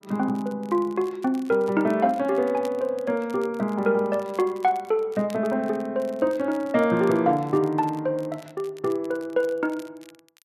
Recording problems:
crackle; vinyl, SNR 27 dB

